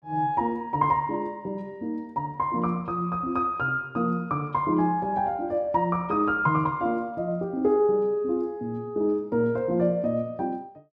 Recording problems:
none

